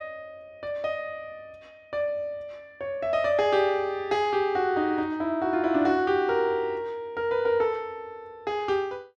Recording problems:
none

